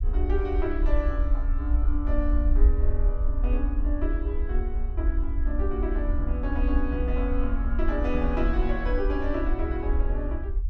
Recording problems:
low-frequency rumble; below 58 Hz, SNR -4 dB

